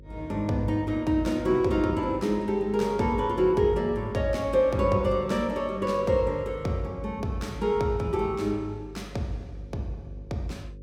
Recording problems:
electrical hum; 50 Hz, harmonics up to 550 Hz, SNR 19 dB

